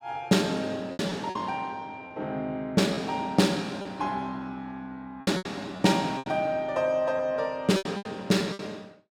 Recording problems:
lost packets; 8% of the sound replaced, filled with repeated pitch periods

